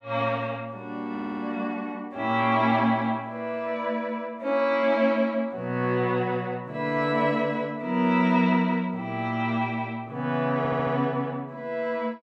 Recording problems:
stutter; at 1 s and at 11 s

